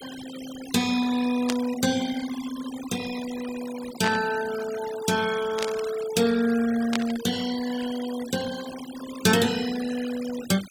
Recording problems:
noise reduction artefacts; signal-to-artefact ratio 13 dB
burst of static; 4 times, first at 1.5 s; peak +2 dB vs average level

